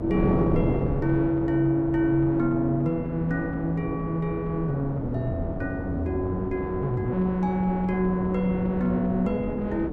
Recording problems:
hum; 60 Hz, harmonics up to 300 Hz, SNR 21 dB
wind on the microphone; below 420 Hz, SNR 6 dB

